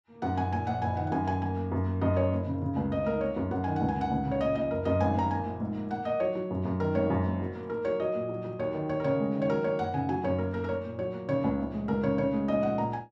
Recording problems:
none

